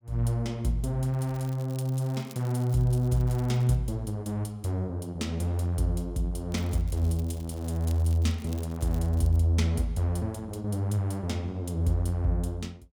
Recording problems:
crackling; from 1 to 4 s and from 6.5 to 9.5 s; loose cable, SNR 23 dB

